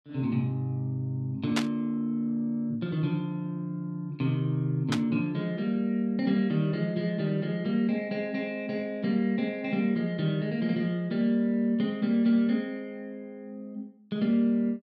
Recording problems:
burst of static; at 1.5 s and at 5 s; peak +3 dB vs average level

